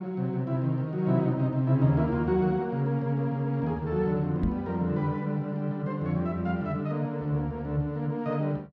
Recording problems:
knock on the microphone; at 4.5 s; peak +2 dB vs average level

